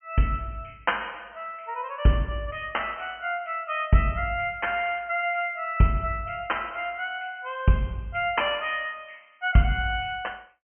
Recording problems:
treble missing; nothing above 3.1 kHz

